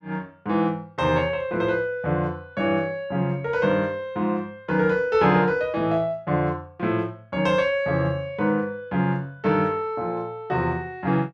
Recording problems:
none

